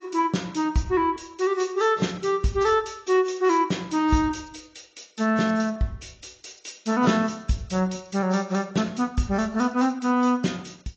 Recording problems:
lossy codec; AAC, log-spectral distance 5 dB

